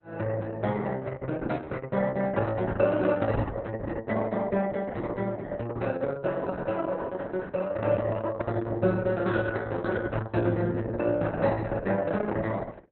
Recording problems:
codec artefacts; Opus, log-spectral distance 4 dB, nothing above 4 kHz

